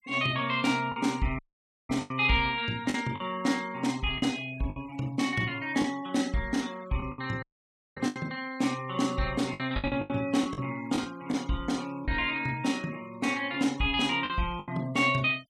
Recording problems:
denoising artefacts; signal-to-artefact ratio 21 dB
lost packets; 7% of the sound replaced, filled with the last packet
dropout; at 1.5 s for 0.5 s and at 7.5 s for 0.5 s

